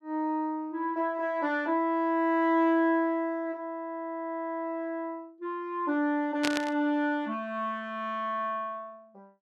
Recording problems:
static burst; at 6.5 s; peak +3 dB vs average level

